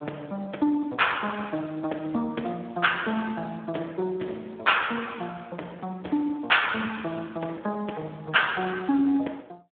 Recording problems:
phone line; 240 Hz to 3.5 kHz, Speex

